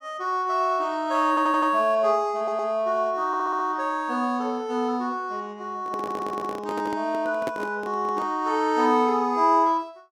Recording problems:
stutter; 4 times, first at 1.5 s
microphone handling noise; from 6 to 8.5 s; peak -3 dB vs average level

